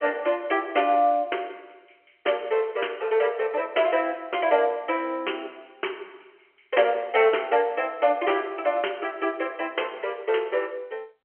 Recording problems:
phone line; 320 Hz to 3.2 kHz, G.711

